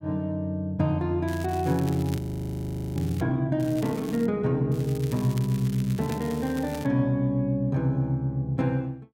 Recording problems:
crackling; from 1.5 to 3 s, at 3.5 s and from 4.5 to 7 s; loose cable, SNR 19 dB
frozen audio; at 2 s for 1 s

